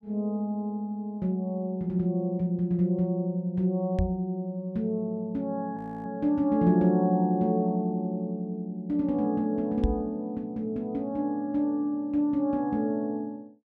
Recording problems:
knock on the microphone; at 4 s and at 10 s; peak +5 dB vs average level
audio freezing; at 6 s

